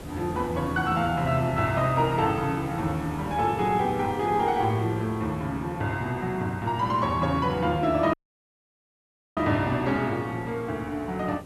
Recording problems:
background hiss; slope -7 dB per octave, SNR 15 dB
audio cutting out; at 8 s for 1 s

